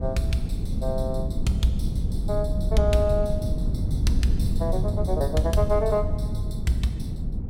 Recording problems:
low-frequency rumble; below 130 Hz, SNR 1 dB

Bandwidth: 16 kHz